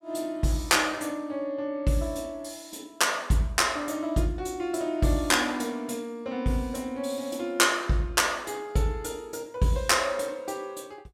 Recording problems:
none

